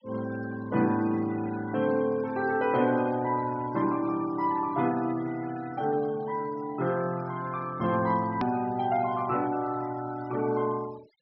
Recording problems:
treble missing; nothing above 5.7 kHz
denoising artefacts; signal-to-artefact ratio 20 dB
edit click; at 8.5 s

